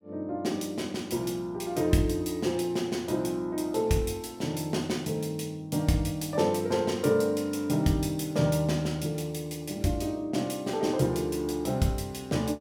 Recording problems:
none

